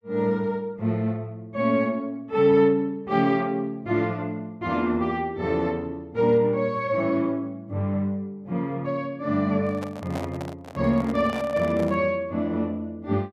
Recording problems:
handling noise; from 9.5 to 12 s; peak -6 dB vs average level

